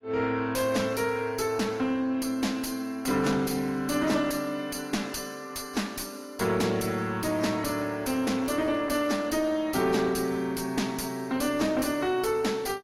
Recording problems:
codec artefacts; AAC, log-spectral distance 4 dB
distortion; soft clipping, signal-to-distortion ratio 10 dB

